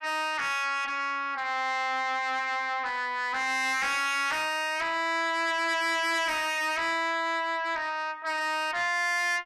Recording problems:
distorted audio; soft clipping, signal-to-distortion ratio 7 dB

